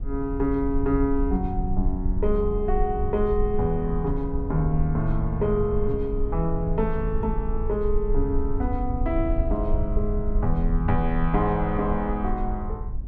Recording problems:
low-frequency rumble; below 58 Hz, SNR 3 dB

